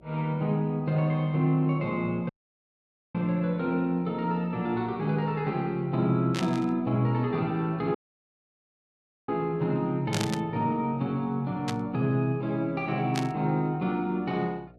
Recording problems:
electrical hum; 60 Hz, harmonics up to 720 Hz, SNR 28 dB
dropout; at 2.5 s for 1 s and at 8 s for 1.5 s
static burst; 4 times, first at 6.5 s; peak 0 dB vs average level

